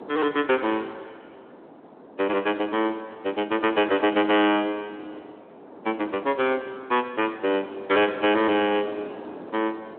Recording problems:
telephone audio; 220 Hz to 3.4 kHz, Speex
distortion; soft clipping, signal-to-distortion ratio 12 dB
wind on the microphone; below 770 Hz, SNR 19 dB

